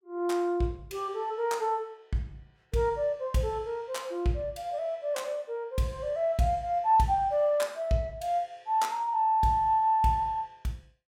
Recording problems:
none

